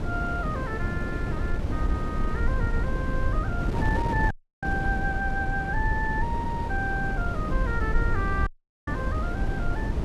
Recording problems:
low-frequency rumble; below 64 Hz, SNR 2 dB
wind on the microphone; below 320 Hz, SNR 0 dB
audio cutting out; at 4.5 s and at 8.5 s

